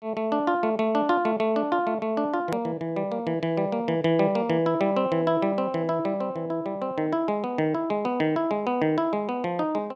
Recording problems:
edit click; at 2.5 s

